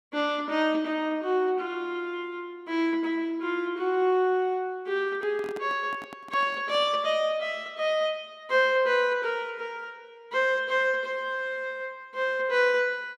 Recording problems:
handling noise; from 5 to 7 s; peak -10 dB vs average level

